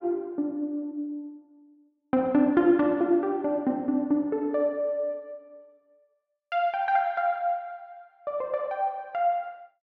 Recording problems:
none

